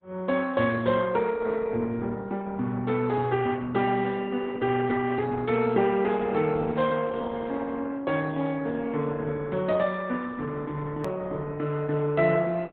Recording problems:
low-pass filter; nothing above 4 kHz
codec artefacts; Opus, log-spectral distance 3 dB
click at an edit; at 11 s

